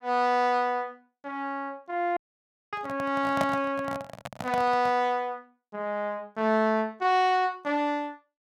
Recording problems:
audio cutting out; at 2 s for 0.5 s
microphone handling noise; from 2.5 to 5 s; peak +2 dB vs average level

